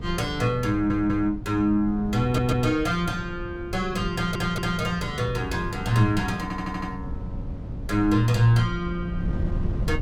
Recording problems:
wind noise; below 140 Hz, SNR 10 dB
stutter; 4 times, first at 0.5 s

